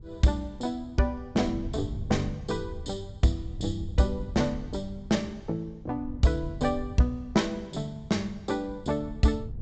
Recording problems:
treble cut off; nothing above 8 kHz
wind noise; below 100 Hz, SNR 12 dB

